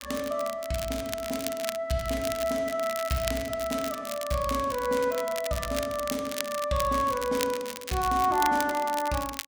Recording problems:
crackling; vinyl, SNR 9 dB

